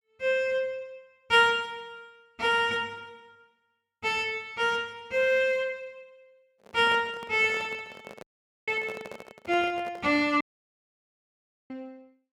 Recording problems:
handling noise; from 6.5 to 10 s; peak -11 dB vs average level
dropout; at 8 s and at 10 s for 1.5 s

